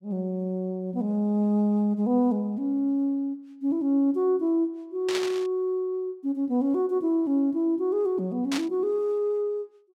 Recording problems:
static burst; at 5 s and at 8.5 s; peak -1 dB vs average level

